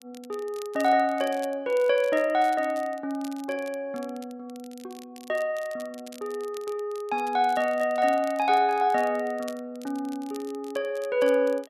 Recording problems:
crackling; vinyl, SNR 23 dB

